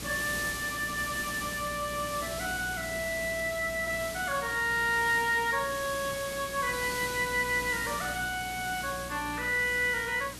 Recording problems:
mains hum; 60 Hz, harmonics up to 420 Hz, SNR 17 dB
background hiss; SNR 9 dB

